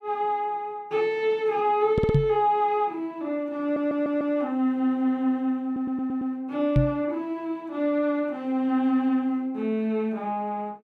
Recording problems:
audio stuttering; at 2 s, at 3.5 s and at 5.5 s
microphone thump; at 2 s and at 7 s; peak +8 dB vs average level

